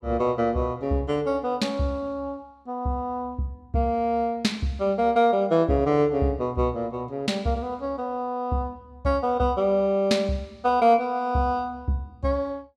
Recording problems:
none

